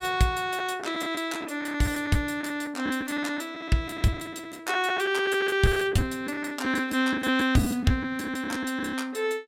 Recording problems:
lost packets; 11% of the sound replaced, filled with the last packet

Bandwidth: 16 kHz